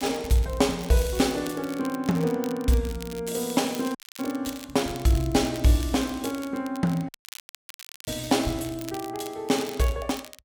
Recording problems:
crackle; vinyl, SNR 17 dB
audio cutting out; at 4 s and at 7 s for 1 s

